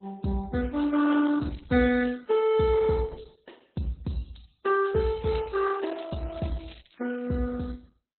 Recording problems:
lossy compression; MP3, then Opus, log-spectral distance 7 dB, nothing above 4 kHz
crackling; from 0.5 to 2 s and from 5 to 7.5 s; loose cable, SNR 28 dB

